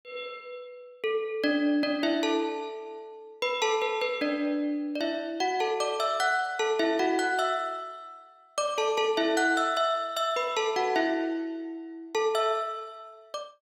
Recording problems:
none

